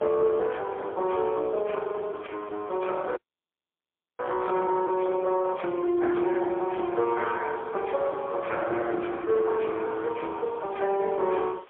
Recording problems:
phone line; 320 Hz to 2.4 kHz, AMR-NB, then MP3
hiss; SNR 28 dB
audio cutting out; at 3 s for 1 s

